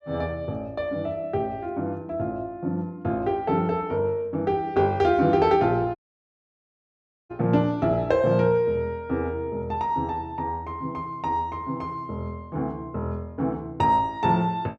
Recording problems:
dropout; at 6 s for 1.5 s

